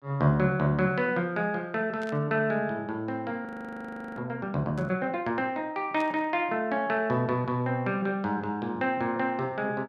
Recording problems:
static burst; at 2 s, at 5 s and at 6 s; peak -12 dB vs average level
frozen audio; at 3.5 s for 0.5 s

